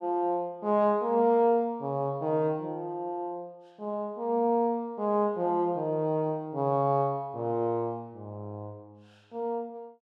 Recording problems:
none

